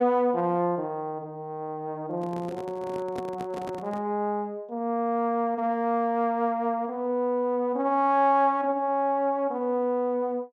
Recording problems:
microphone handling noise; from 2 to 4 s; peak -6 dB vs average level

